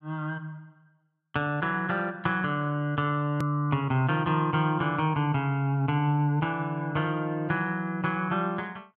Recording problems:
edit click; at 3.5 s

